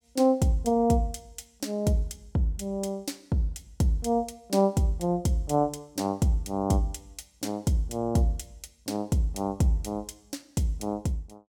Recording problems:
none

